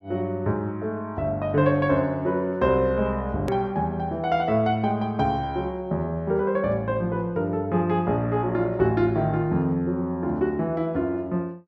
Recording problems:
hard cut with a click; at 3.5 s

